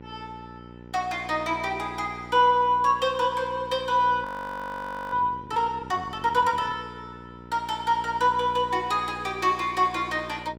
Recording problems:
hum; 60 Hz, harmonics up to 1.5 kHz, SNR 18 dB
audio freezing; at 4.5 s for 1 s

